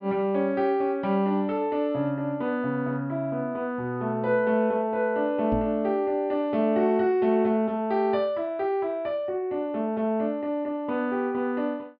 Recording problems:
low-pass filter; nothing above 5.5 kHz
knock on the microphone; at 5.5 s; peak -2 dB vs average level

